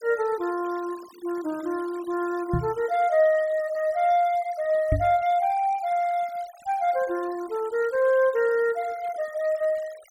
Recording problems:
noise reduction artefacts; signal-to-artefact ratio 23 dB
knock on the microphone; at 2.5 s and at 5 s; peak +3 dB vs average level

